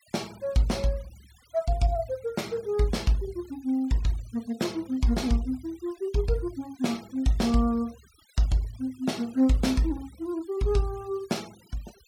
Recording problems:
noise reduction artefacts; signal-to-artefact ratio 23 dB

